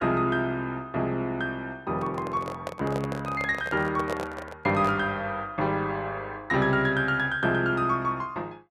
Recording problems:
microphone handling noise; from 2 to 5 s; peak -1 dB vs average level

